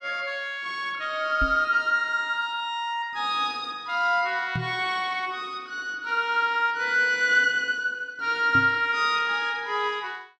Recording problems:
knock on the microphone; at 1.5 s, at 4.5 s and at 8.5 s; peak -2 dB vs average level

